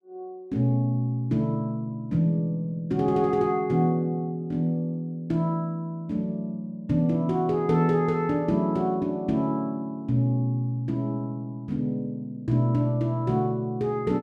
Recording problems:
none

